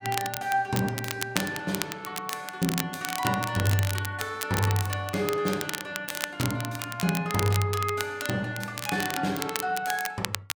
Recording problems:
crackling; vinyl, SNR 6 dB

